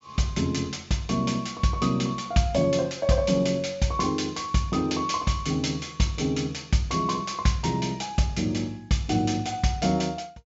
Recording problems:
low-pass filter; nothing above 8 kHz

